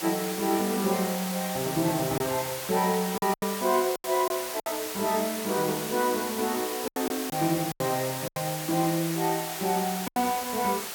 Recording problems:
background hiss; slope 0 dB per octave, SNR 5 dB
packet loss; 6% of the sound replaced, filled with silence

